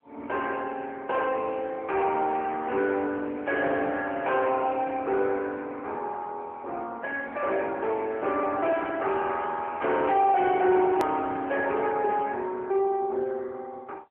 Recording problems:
phone line; 260 Hz to 3.2 kHz, AMR-NB
distortion; soft clipping, signal-to-distortion ratio 10 dB
click at an edit; at 11 s

